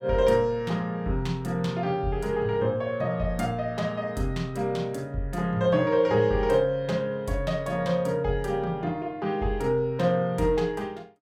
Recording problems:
none

